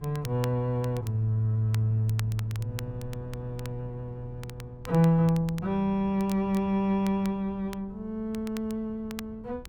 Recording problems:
wind noise; below 160 Hz, SNR 19 dB
crackle; vinyl, SNR 19 dB

